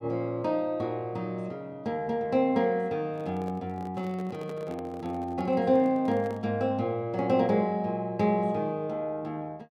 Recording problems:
handling noise; from 3 to 6.5 s; peak -9 dB vs average level

